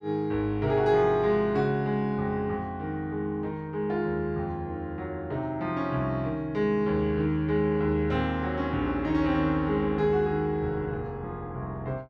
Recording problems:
none

